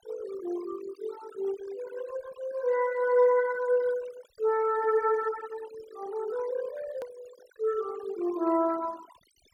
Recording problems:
noise reduction artefacts; signal-to-artefact ratio 19 dB
click at an edit; at 7 s

